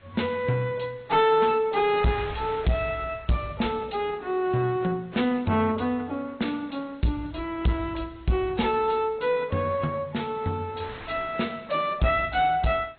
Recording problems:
treble missing; nothing above 4 kHz
codec artefacts; AAC, log-spectral distance 3 dB
distortion; soft clipping, signal-to-distortion ratio 11 dB
wind noise; below 2.4 kHz, SNR 20 dB

